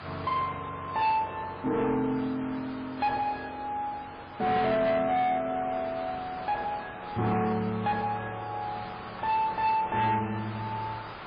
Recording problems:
codec artefacts; MP3, then AAC, log-spectral distance 5 dB, nothing above 4.6 kHz
distortion; soft clipping, signal-to-distortion ratio 10 dB
hiss; SNR 13 dB

